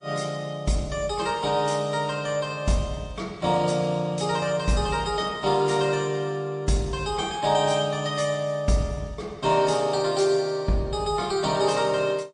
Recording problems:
lossy codec; MP3, then MP3, log-spectral distance 3 dB, nothing above 9.8 kHz

